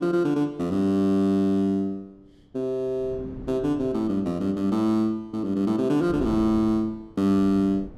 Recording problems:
wind noise; below 300 Hz, SNR 17 dB

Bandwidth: 14.5 kHz